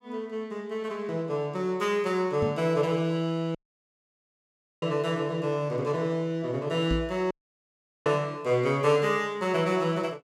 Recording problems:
knock on the microphone; at 2.5 s and at 7 s; peak 0 dB vs average level
dropout; at 3.5 s for 1.5 s and at 7.5 s for 1 s

